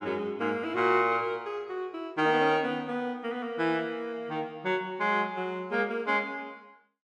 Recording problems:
none

